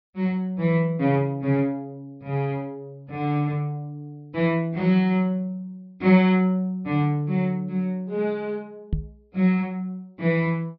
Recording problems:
treble cut off; nothing above 5.5 kHz
knock on the microphone; at 9 s; peak +2 dB vs average level

